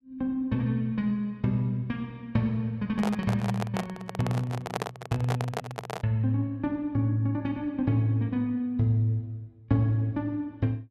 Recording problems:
handling noise; from 3 to 6 s; peak +2 dB vs average level

